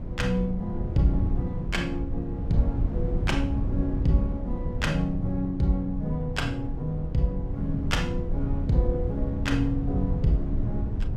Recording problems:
rumble; below 120 Hz, SNR 2 dB

